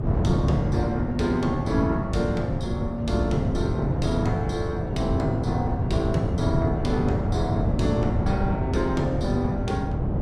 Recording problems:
wind on the microphone; below 220 Hz, SNR 0 dB

